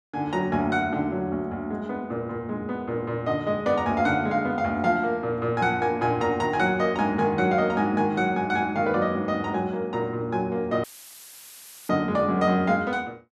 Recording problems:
audio cutting out; at 11 s for 1 s; filled with static

